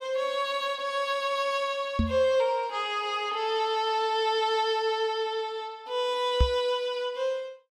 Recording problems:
knock on the microphone; at 2 s and at 6.5 s; peak +7 dB vs average level

